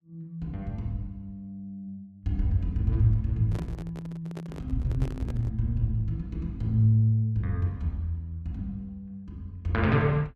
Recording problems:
handling noise; from 3.5 to 5.5 s; peak -8 dB vs average level

